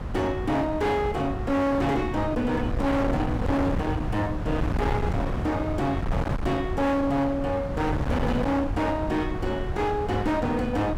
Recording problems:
distortion; hard clipping, signal-to-distortion ratio 7 dB
wind noise; below 340 Hz, SNR 4 dB

